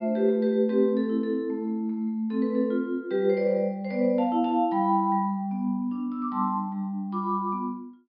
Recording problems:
low-pass filter; nothing above 5.5 kHz

